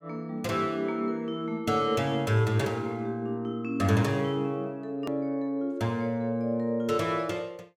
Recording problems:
hard cut with a click; at 5 s

